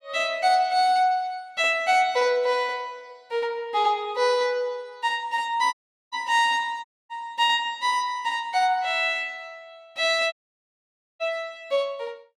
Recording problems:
dropout; at 5.5 s, at 7 s and at 10 s for 1 s

